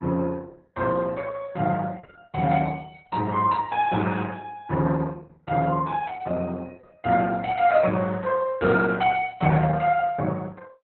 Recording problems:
lossy compression; Opus, log-spectral distance 3 dB, nothing above 4 kHz

